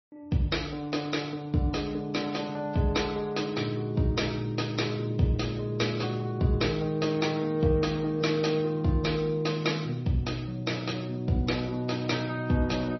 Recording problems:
lossy compression; AAC, then MP3, log-spectral distance 4 dB, nothing above 5.8 kHz

